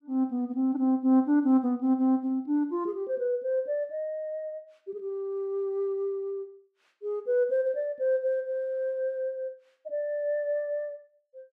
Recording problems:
none

